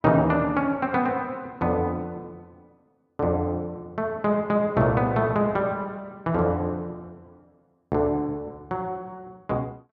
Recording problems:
none

